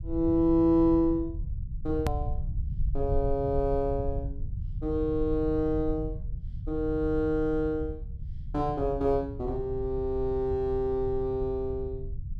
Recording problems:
low-frequency rumble; below 90 Hz, SNR 8 dB
edit click; at 2 s

